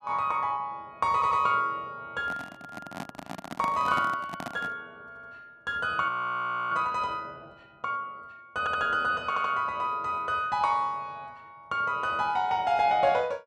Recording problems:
stutter; 4 times, first at 1 s
microphone handling noise; from 2 to 5 s; peak -3 dB vs average level
frozen audio; at 6 s for 0.5 s

